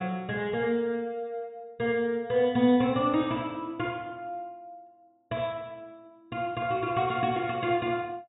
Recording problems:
low-pass filter; nothing above 4 kHz

